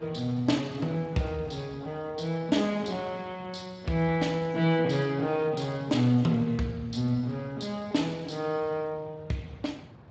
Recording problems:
lossy codec; Speex, log-spectral distance 4 dB, nothing above 7.6 kHz
wind on the microphone; below 500 Hz, SNR 21 dB

